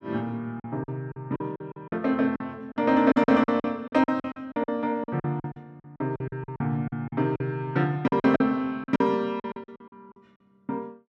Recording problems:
packet loss; 16% of the sound replaced, filled with silence

